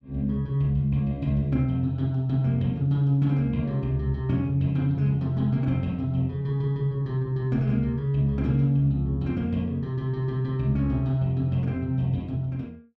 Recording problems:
none

